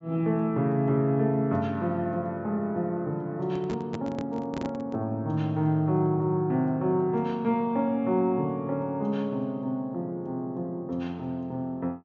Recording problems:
treble cut off; nothing above 7.6 kHz
handling noise; from 3.5 to 5 s; peak -3 dB vs average level

